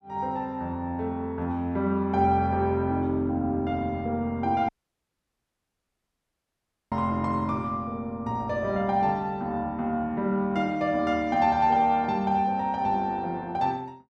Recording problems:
dropout; at 4.5 s for 2 s

